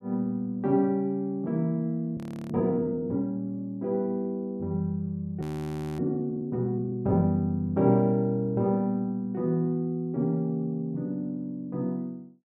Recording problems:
frozen audio; at 2 s and at 5.5 s for 0.5 s

